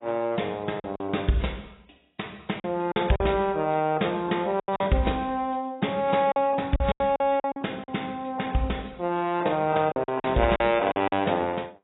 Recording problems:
lossy compression; AAC, log-spectral distance 5 dB, nothing above 3.8 kHz
packet loss; 8% of the sound replaced, filled with silence

